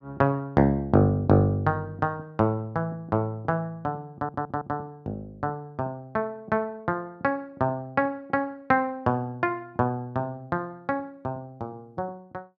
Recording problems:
stutter; at 4 s

